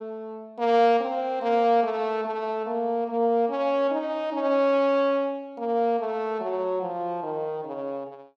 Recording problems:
none

